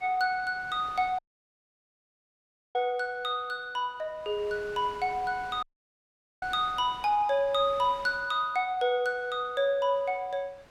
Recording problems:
wind on the microphone; below 2.4 kHz, SNR 22 dB
dropout; at 1 s for 1.5 s and at 5.5 s for 1 s

